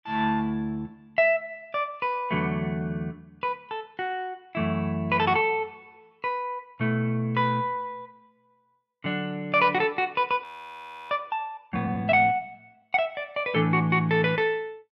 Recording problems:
frozen audio; at 10 s for 0.5 s

